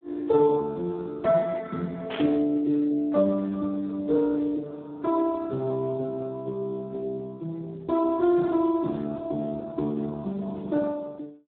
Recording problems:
phone line; 170 Hz to 2 kHz, Speex
static burst; at 2 s; peak -4 dB vs average level

